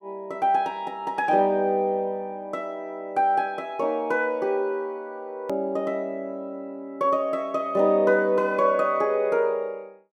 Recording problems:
edit click; at 5.5 s

